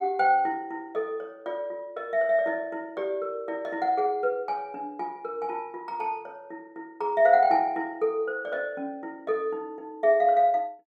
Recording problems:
none

